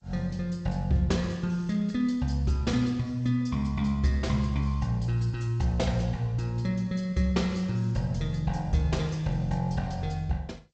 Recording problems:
lossy compression; G.722, then MP2, log-spectral distance 2 dB, nothing above 7.3 kHz

